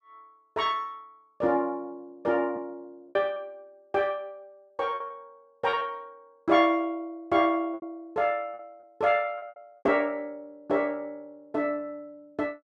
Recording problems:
packet loss; 5% of the sound replaced, filled with repeated pitch periods

